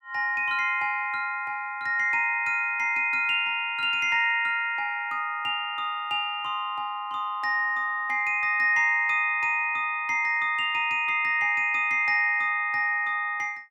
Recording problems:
none

